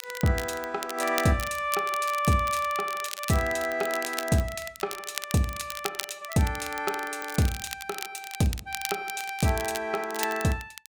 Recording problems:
crackle; vinyl, SNR 9 dB

